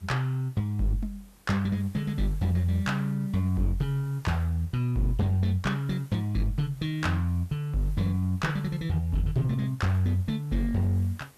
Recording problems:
distortion; hard clipping, uneven, signal-to-distortion ratio 12 dB
background hiss; slope -3 dB per octave, SNR 27 dB

